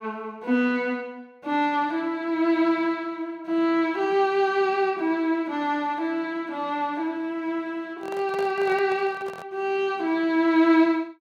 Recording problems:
handling noise; from 8 to 9.5 s; peak -8 dB vs average level

